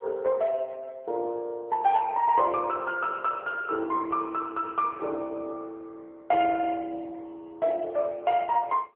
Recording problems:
telephone audio; 300 Hz to 2.6 kHz, AMR-NB

